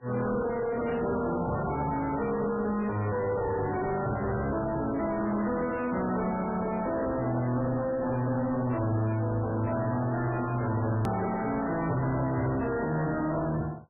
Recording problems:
lossy compression; AAC, then MP3, log-spectral distance 3 dB, nothing above 13.1 kHz
distorted audio; soft clipping, signal-to-distortion ratio 7 dB
click at an edit; at 11 s

